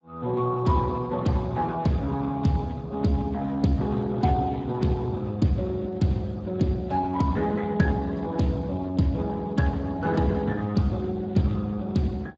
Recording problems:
lossy codec; Speex, log-spectral distance 3 dB

